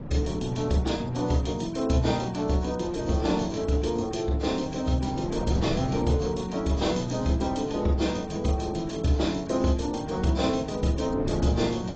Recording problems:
lossy codec; AAC, log-spectral distance 5 dB, nothing above 7.3 kHz
wind on the microphone; below 370 Hz, SNR 11 dB

